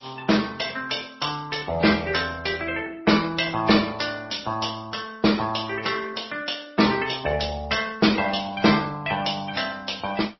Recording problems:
codec artefacts; Opus, then MP3, log-spectral distance 7 dB, nothing above 5.7 kHz

